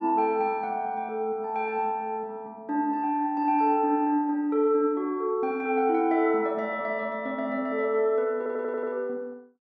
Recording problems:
stutter; at 8.5 s

